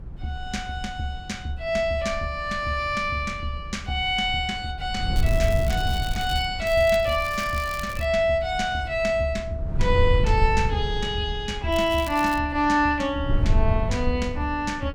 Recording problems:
wind noise; below 92 Hz, SNR 6 dB
crackle; from 5 to 6.5 s, from 6.5 to 8 s and at 12 s; loose cable, SNR 16 dB

